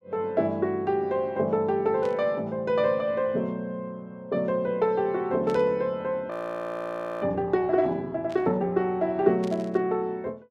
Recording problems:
burst of static; 4 times, first at 2 s; peak -13 dB vs average level
frozen audio; at 6.5 s for 1 s

